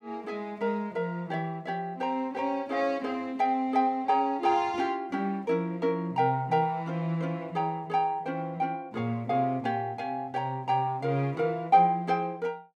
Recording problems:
none

